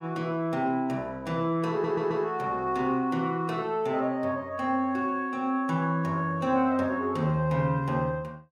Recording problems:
stutter; at 1.5 s

